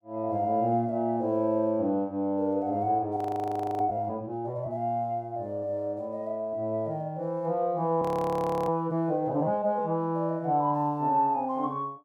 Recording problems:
frozen audio; at 3 s for 0.5 s and at 8 s for 0.5 s

